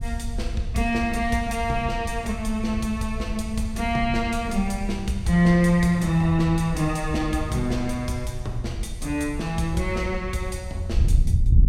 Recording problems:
wind noise; below 82 Hz, SNR 7 dB

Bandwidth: 16 kHz